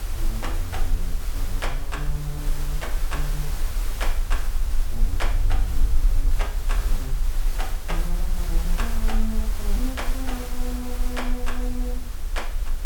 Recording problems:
electrical hum; 50 Hz, harmonics up to 450 Hz, SNR 25 dB
background hiss; slope -3 dB per octave, SNR 4 dB
low-frequency rumble; below 38 Hz, strongest tone 20 Hz, SNR -5 dB

